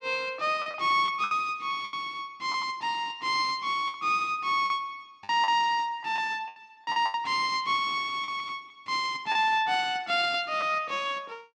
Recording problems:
packet loss; 8% of the sound replaced, filled with the last packet

